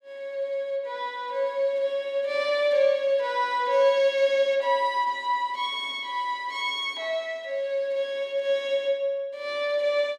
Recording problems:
none

